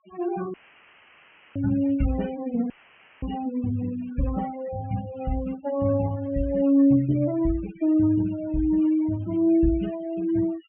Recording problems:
treble cut off; nothing above 3 kHz
noise reduction artefacts; signal-to-artefact ratio 19 dB
audio cutting out; at 0.5 s for 1 s and at 2.5 s for 0.5 s; filled with static

